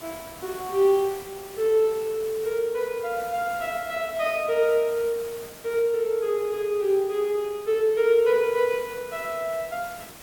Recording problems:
background hiss; slope -3 dB per octave, SNR 18 dB

